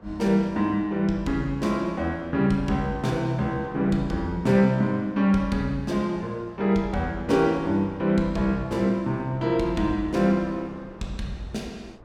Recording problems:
wind on the microphone; below 770 Hz, SNR 23 dB

